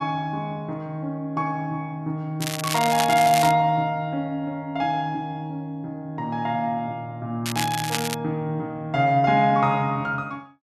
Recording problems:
crackle; from 2.5 to 3.5 s and at 7.5 s; loose cable, SNR 5 dB

